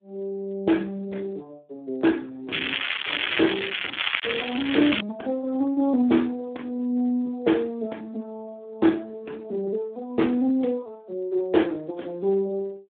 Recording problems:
telephone audio; 220 Hz to 3.5 kHz, Speex
crackle; from 2.5 to 5 s; loose cable, SNR 0 dB

